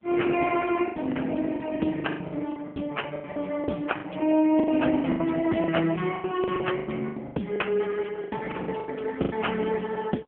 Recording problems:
phone line; 150 Hz to 3.3 kHz, AMR-NB
lost packets; 16% of the sound replaced, filled with the last packet

